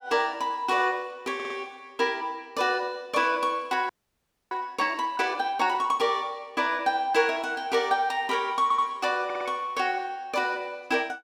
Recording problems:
audio stuttering; at 1.5 s, at 8.5 s and at 9.5 s
audio freezing; at 4 s for 0.5 s

